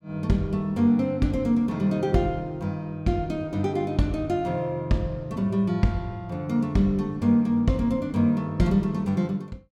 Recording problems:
none

